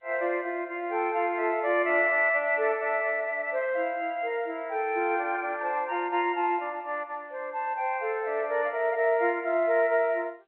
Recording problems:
telephone audio; 300 Hz to 3.5 kHz, G.711

